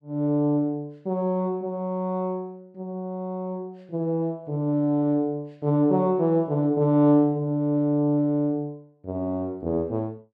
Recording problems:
none

